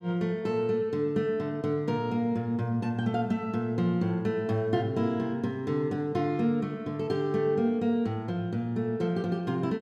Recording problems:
none

